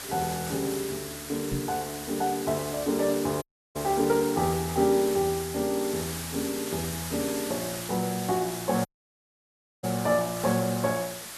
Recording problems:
background hiss; slope 0 dB per octave, SNR 8 dB
knock on the microphone; at 1.5 s; peak 0 dB vs average level
dropout; at 3.5 s and at 9 s for 1 s

